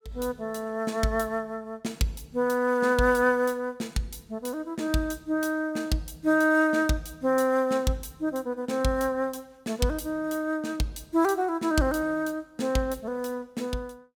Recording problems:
none

